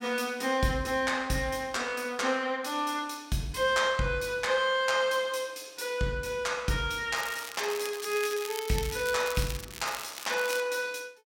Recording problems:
crackle; from 7 to 11 s; loose cable, SNR 10 dB

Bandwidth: 16.5 kHz